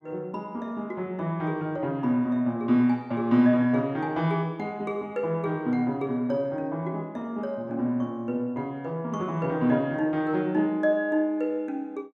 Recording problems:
none

